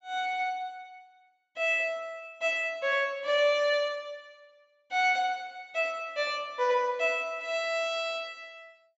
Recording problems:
low-pass filter; nothing above 8 kHz

